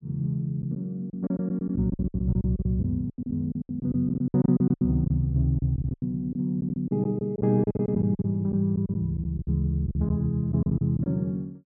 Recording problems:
lost packets; 16% of the sound replaced, filled with silence

